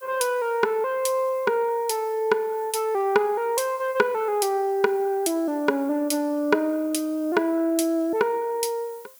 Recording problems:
background hiss; slope 0 dB per octave, SNR 25 dB

